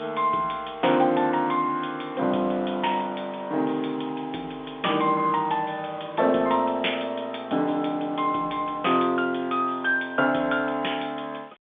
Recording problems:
phone line; 220 Hz to 3.5 kHz, G.711
background hiss; SNR 26 dB

